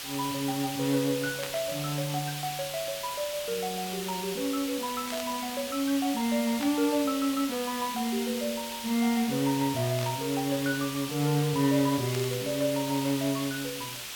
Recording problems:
background hiss; SNR 6 dB
static burst; 5 times, first at 1.5 s; peak -4 dB vs average level

